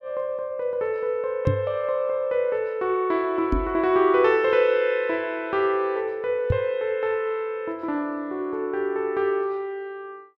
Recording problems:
knock on the microphone; at 1.5 s, at 3.5 s and at 6.5 s; peak +5 dB vs average level

